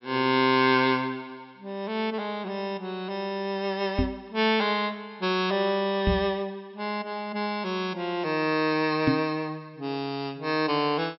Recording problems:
treble cut off; nothing above 5.6 kHz
microphone bump; at 4 s, at 6 s and at 9 s; peak +6 dB vs average level

